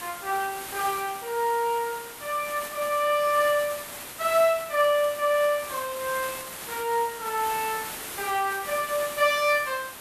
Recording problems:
background hiss; slope -2 dB per octave, SNR 10 dB

